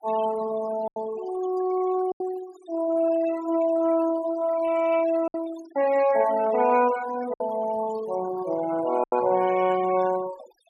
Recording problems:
denoising artefacts; signal-to-artefact ratio 15 dB
packet loss; 3% of the sound replaced, filled with silence

